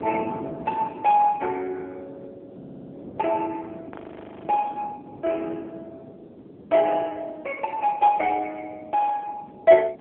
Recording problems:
phone line; 260 Hz to 3.3 kHz, AMR-NB
wind on the microphone; below 460 Hz, SNR 17 dB
stutter; at 2.5 s
frozen audio; at 4 s for 0.5 s

